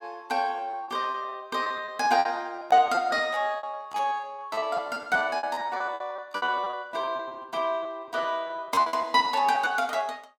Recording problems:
packet loss; 18% of the sound replaced, filled with repeated pitch periods

